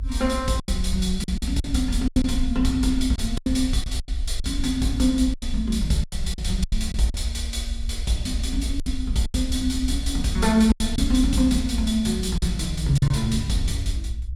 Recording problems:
rumble; below 64 Hz, SNR 6 dB
lost packets; 9% of the sound replaced, filled with silence

